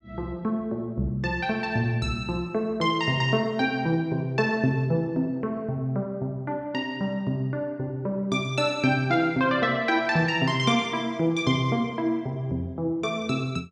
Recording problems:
none

